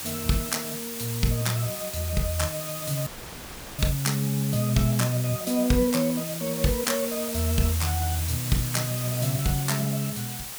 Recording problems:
background hiss; slope 0 dB per octave, SNR 6 dB
audio cutting out; at 3 s for 0.5 s

